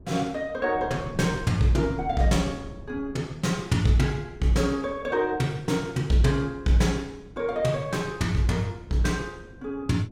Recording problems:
wind on the microphone; below 250 Hz, SNR 18 dB

